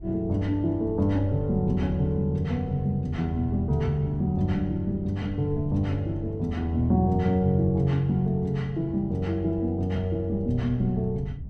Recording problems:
wind noise; below 110 Hz, SNR 15 dB

